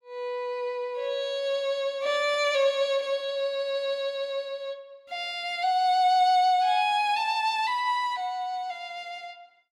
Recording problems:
none

